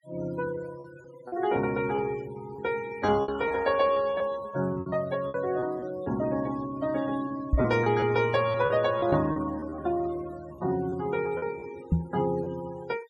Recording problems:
noise reduction artefacts; signal-to-artefact ratio 17 dB
packet loss; 7% of the sound replaced, filled with repeated pitch periods
microphone bump; at 7.5 s and at 12 s; peak +7 dB vs average level

